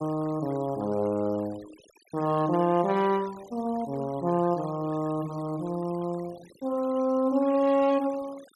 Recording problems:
noise reduction artefacts; signal-to-artefact ratio 21 dB

